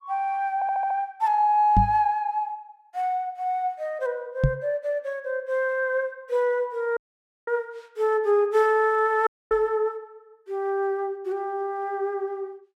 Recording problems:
stutter; at 0.5 s
knock on the microphone; at 2 s, at 4.5 s and at 9.5 s; peak +7 dB vs average level
audio cutting out; at 7 s for 0.5 s and at 9.5 s

